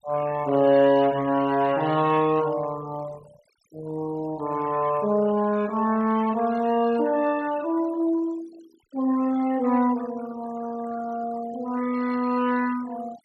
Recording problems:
denoising artefacts; signal-to-artefact ratio 19 dB

